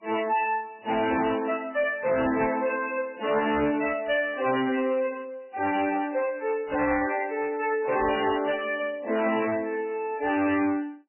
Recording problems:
lossy codec; MP3, then MP3, log-spectral distance 4 dB, nothing above 2.4 kHz
distorted audio; hard clipping, uneven, signal-to-distortion ratio 10 dB

